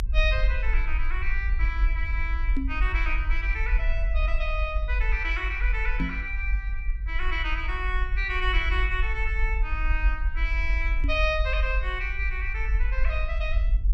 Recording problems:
rumble; below 50 Hz, SNR -1 dB
microphone thump; at 2.5 s, at 6 s and at 11 s; peak +4 dB vs average level

